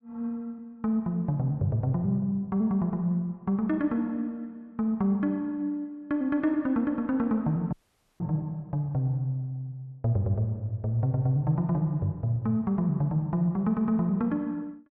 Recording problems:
dropout; at 7.5 s

